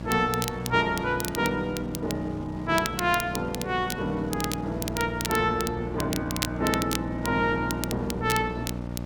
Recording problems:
hum; 60 Hz, harmonics up to 1.2 kHz, SNR 9 dB
wind noise; below 650 Hz, SNR 21 dB
crackle; vinyl, SNR 8 dB

